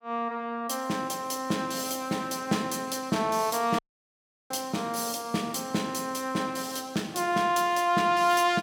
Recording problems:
dropout; at 4 s for 0.5 s

